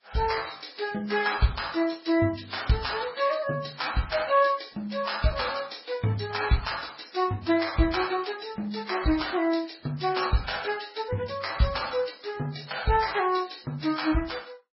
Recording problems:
codec artefacts; Vorbis, then MP3, log-spectral distance 10 dB, nothing above 5.5 kHz

